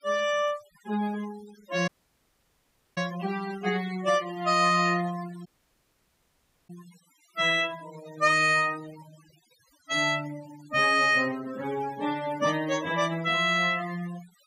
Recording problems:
noise reduction artefacts; signal-to-artefact ratio 19 dB
dropout; at 2 s for 1 s and at 5.5 s for 1 s

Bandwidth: 15.5 kHz